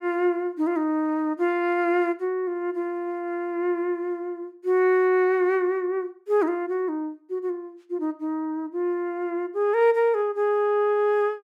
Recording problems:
none

